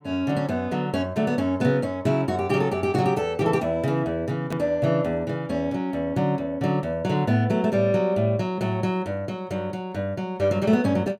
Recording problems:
click at an edit; at 4.5 s

